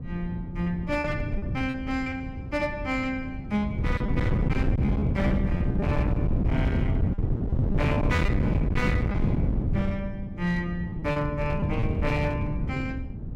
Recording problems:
distorted audio; hard clipping, uneven, signal-to-distortion ratio 12 dB
wind noise; below 200 Hz, SNR -2 dB
packet loss; 6% of the sound replaced, filled with repeated pitch periods

